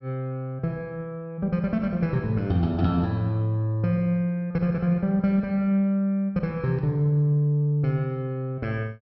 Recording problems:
low-pass filter; nothing above 5.9 kHz

